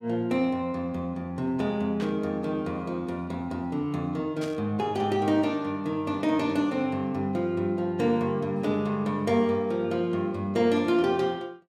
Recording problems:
static burst; at 2 s and at 4.5 s; peak -9 dB vs average level

